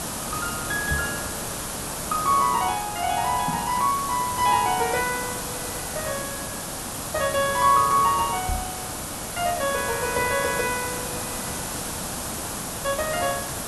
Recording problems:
background hiss; SNR 5 dB
knock on the microphone; at 1 s, at 3.5 s and at 8.5 s; peak -1 dB vs average level

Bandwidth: 12 kHz